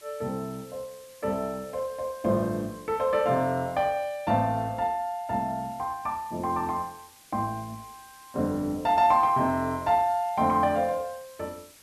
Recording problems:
background hiss; slope 0 dB per octave, SNR 24 dB

